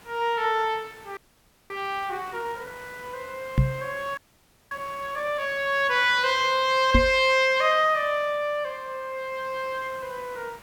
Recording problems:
background hiss; slope -4 dB per octave, SNR 23 dB
audio freezing; at 1 s for 0.5 s and at 4 s for 0.5 s
knock on the microphone; at 3.5 s and at 7 s; peak +7 dB vs average level

